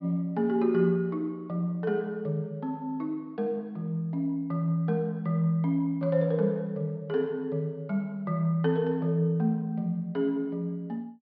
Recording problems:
low-pass filter; nothing above 5.5 kHz

